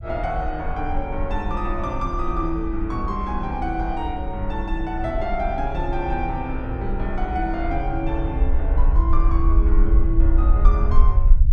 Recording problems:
rumble; below 54 Hz, SNR -2 dB

